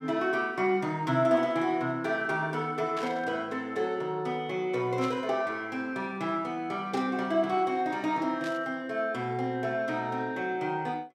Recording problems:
static burst; 4 times, first at 3 s; peak -7 dB vs average level

